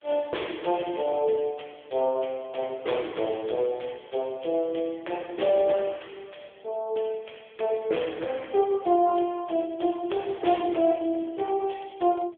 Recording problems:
phone line; 280 Hz to 3.4 kHz, AMR-NB

